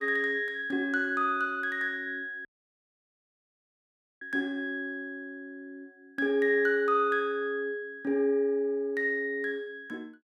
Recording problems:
dropout; at 2.5 s for 2 s

